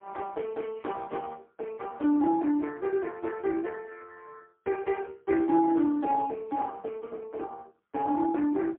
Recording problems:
telephone audio; 240 Hz to 2.8 kHz, AMR-NB, then MP3

